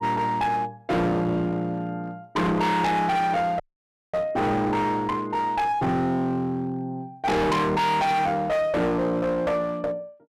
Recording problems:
distortion; hard clipping, uneven, signal-to-distortion ratio 5 dB
dropout; at 3.5 s for 0.5 s

